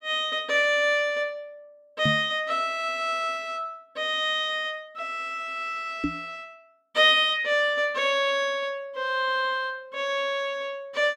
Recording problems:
microphone bump; at 2 s and at 6 s; peak +1 dB vs average level

